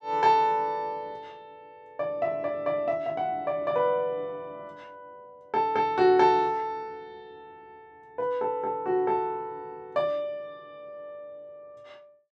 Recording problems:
none

